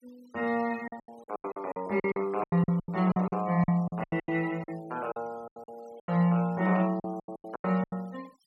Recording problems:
denoising artefacts; signal-to-artefact ratio 24 dB
lost packets; 19% of the sound replaced, filled with silence

